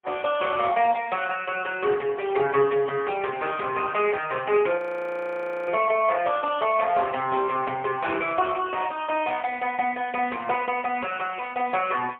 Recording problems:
phone line; 260 Hz to 3.3 kHz, AMR-NB, then MP3
crackle; at 0.5 s and from 8 to 11 s; loose cable, SNR 30 dB
audio freezing; at 5 s for 1 s

